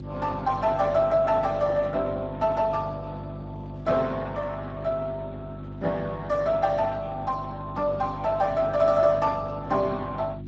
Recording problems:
lossy compression; Speex, log-spectral distance 3 dB
hum; 50 Hz, harmonics up to 400 Hz, SNR 12 dB

